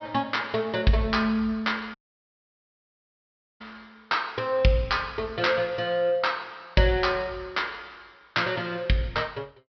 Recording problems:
treble missing; nothing above 5.5 kHz
audio cutting out; at 2 s for 1.5 s

